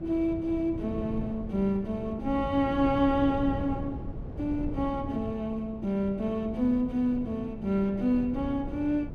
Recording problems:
wind on the microphone; below 240 Hz, SNR 10 dB

